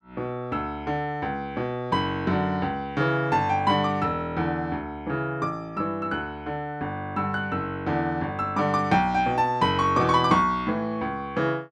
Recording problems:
none

